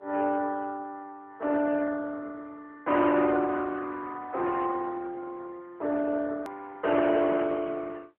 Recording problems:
phone line; 260 Hz to 3.6 kHz, AMR-NB
distortion; hard clipping, uneven, signal-to-distortion ratio 12 dB
edit click; at 6.5 s

